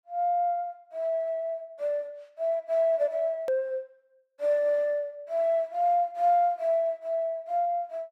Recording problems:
hard cut with a click; at 3.5 s

